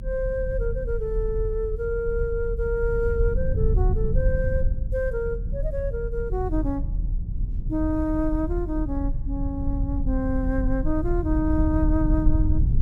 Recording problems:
rumble; below 80 Hz, SNR 0 dB

